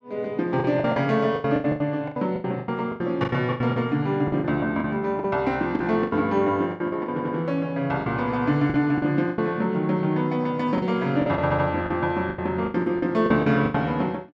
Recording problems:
packet loss; 15% of the sound replaced, filled with the last packet
stutter; at 7 s and at 11 s

